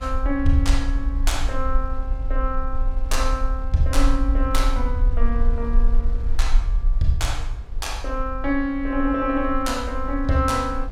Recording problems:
rumble; below 44 Hz, strongest tone 24 Hz, SNR 1 dB
wind on the microphone; below 920 Hz, SNR 22 dB

